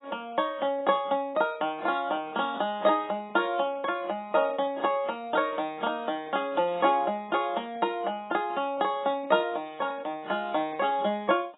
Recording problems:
lossy codec; AAC, log-spectral distance 3 dB, nothing above 3.5 kHz

